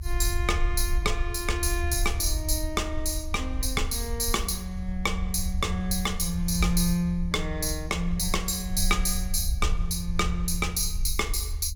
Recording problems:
low-frequency rumble; below 72 Hz, SNR 5 dB

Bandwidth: 17 kHz